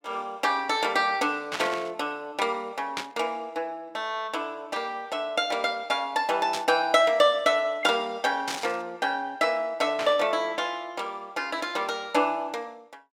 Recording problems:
burst of static; 5 times, first at 1.5 s; peak 0 dB vs average level

